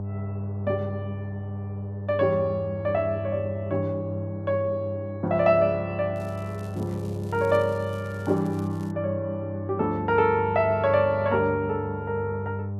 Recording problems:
hum; 50 Hz, harmonics up to 600 Hz, SNR 8 dB
crackling; from 6 to 9 s; loose cable, SNR 27 dB

